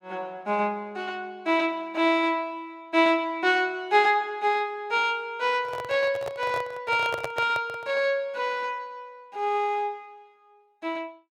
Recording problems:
microphone handling noise; from 5.5 to 8 s; peak -2 dB vs average level

